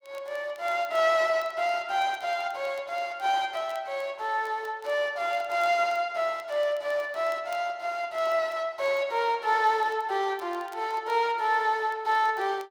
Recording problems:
crackle; vinyl, SNR 30 dB

